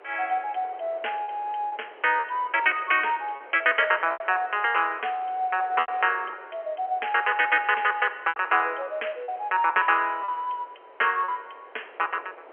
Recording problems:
phone line; 340 Hz to 3.3 kHz, G.711
wind noise; below 1.2 kHz, SNR 23 dB
lost packets; 5% of the sound replaced, filled with repeated pitch periods

